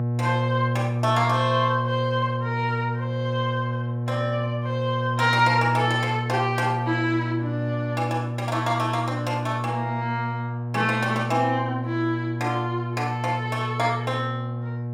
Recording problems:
hum; 60 Hz, harmonics up to 840 Hz, SNR 3 dB

